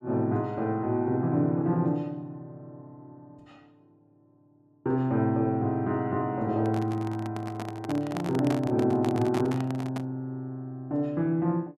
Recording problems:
microphone handling noise; from 6.5 to 10 s; peak -2 dB vs average level

